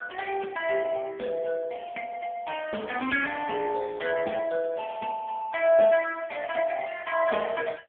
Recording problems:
telephone audio; 220 Hz to 3.1 kHz, AMR-NB

